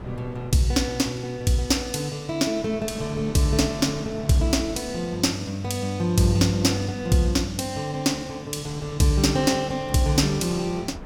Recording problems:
wind on the microphone; below 450 Hz, SNR 19 dB

